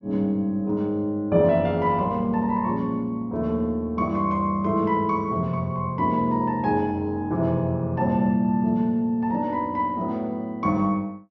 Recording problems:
treble cut off; nothing above 6.7 kHz

